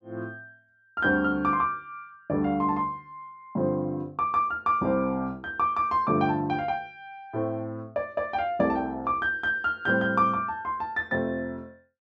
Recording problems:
none

